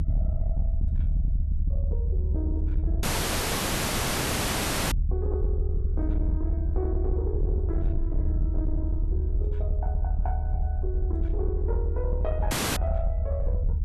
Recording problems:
distorted audio; soft clipping, signal-to-distortion ratio 10 dB
low-frequency rumble; below 74 Hz, SNR -8 dB
audio cutting out; at 3 s for 2 s and at 13 s

